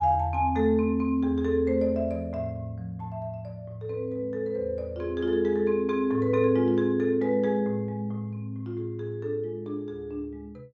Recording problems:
none

